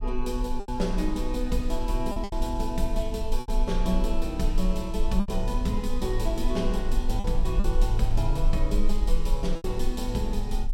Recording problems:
low-frequency rumble; below 38 Hz, SNR 1 dB
lost packets; 5% of the sound replaced, filled with repeated pitch periods

